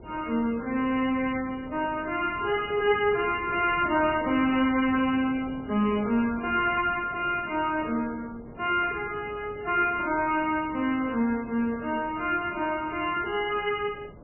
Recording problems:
codec artefacts; MP3, log-spectral distance 3 dB, nothing above 2.4 kHz
wind on the microphone; below 490 Hz, SNR 19 dB

